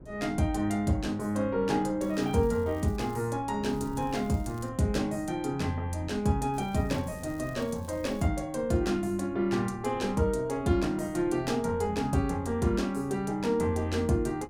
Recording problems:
wind noise; below 270 Hz, SNR 18 dB
crackle; from 2 to 3 s, from 3.5 to 4.5 s and from 6.5 to 8.5 s; loose cable, SNR 26 dB

